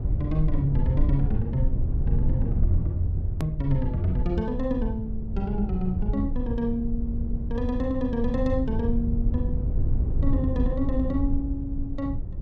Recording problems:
low-frequency rumble; below 88 Hz, SNR 0 dB
hard cut with a click; at 3.5 s

